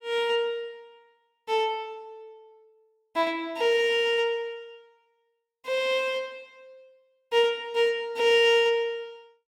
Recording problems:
none

